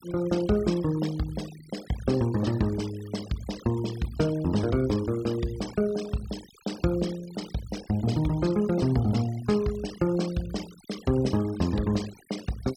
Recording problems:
noise reduction artefacts; signal-to-artefact ratio 18 dB

